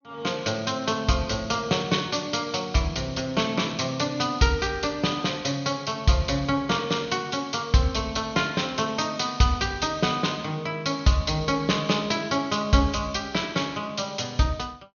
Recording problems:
treble cut off; nothing above 6.6 kHz

